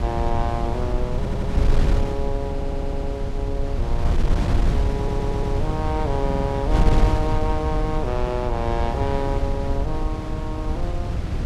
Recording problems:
wind on the microphone; below 110 Hz, SNR -4 dB
audio stuttering; 4 times, first at 1 s

